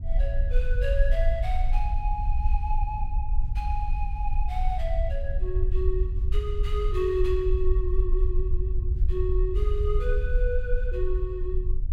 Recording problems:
rumble; below 56 Hz, SNR -5 dB

